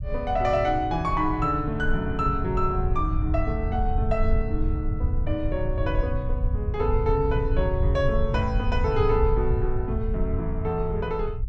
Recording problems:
low-frequency rumble; below 86 Hz, SNR 2 dB

